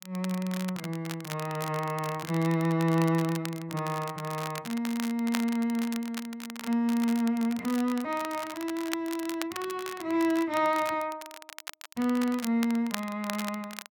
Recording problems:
crackling; vinyl, SNR 12 dB

